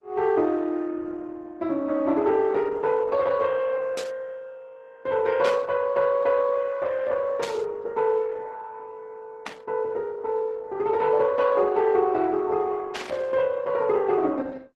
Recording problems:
codec artefacts; Opus, then Opus, log-spectral distance 3 dB
burst of static; 5 times, first at 4 s; peak -4 dB vs average level

